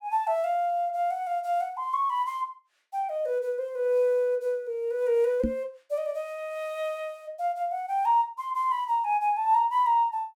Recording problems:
microphone bump; at 5.5 s; peak +3 dB vs average level

